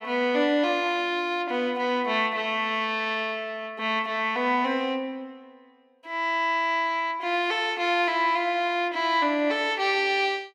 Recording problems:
none

